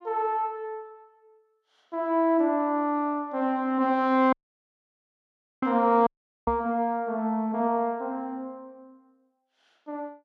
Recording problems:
dropout; at 4.5 s for 1.5 s and at 6 s
microphone bump; at 6.5 s; peak -8 dB vs average level

